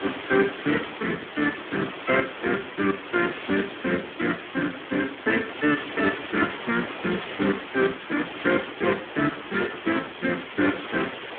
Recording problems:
phone line; 190 Hz to 3.5 kHz, Speex
background hiss; SNR 9 dB

